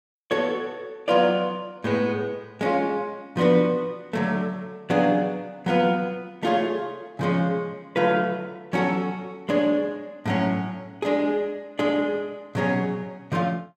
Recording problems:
none

